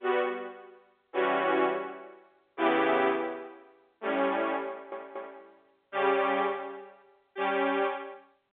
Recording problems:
phone line; 300 Hz to 3.6 kHz, G.711
audio stuttering; at 4.5 s

